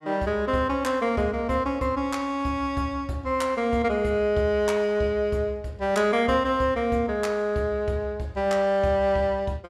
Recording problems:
none

